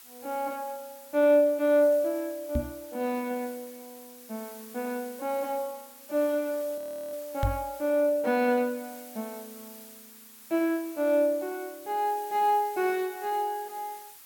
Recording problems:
background hiss; slope +1 dB per octave, SNR 18 dB
microphone thump; at 2.5 s and at 7.5 s; peak +3 dB vs average level
audio freezing; at 7 s

